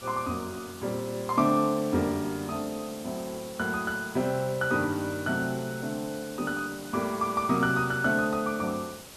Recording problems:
background hiss; SNR 15 dB

